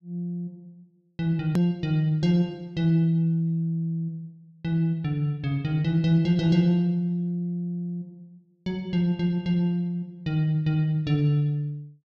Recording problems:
edit click; at 1.5 s

